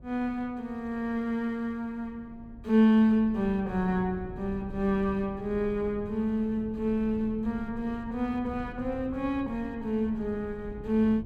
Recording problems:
wind on the microphone; below 180 Hz, SNR 16 dB

